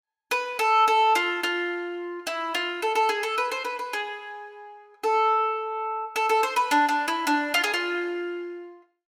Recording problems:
none

